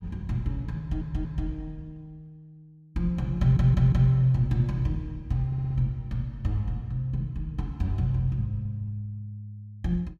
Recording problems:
stutter; at 1 s, at 3.5 s and at 5.5 s

